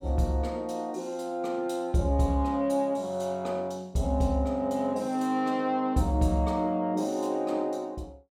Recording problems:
none

